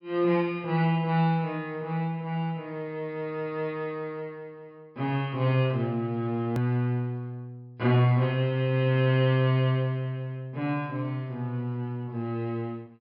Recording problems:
treble cut off; nothing above 5.5 kHz
edit click; at 6.5 s

